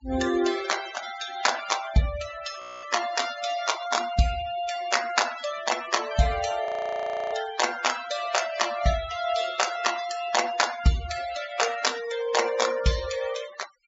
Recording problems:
treble missing; nothing above 7.4 kHz
denoising artefacts; signal-to-artefact ratio 12 dB
frozen audio; at 2.5 s and at 6.5 s for 0.5 s

